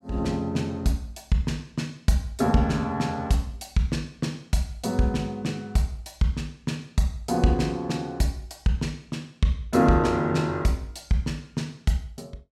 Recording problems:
none

